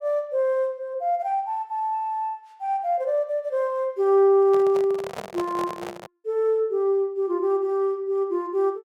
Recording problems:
handling noise; from 4.5 to 6 s; peak -5 dB vs average level

